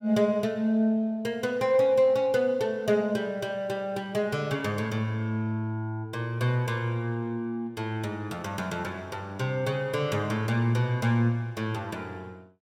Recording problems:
none

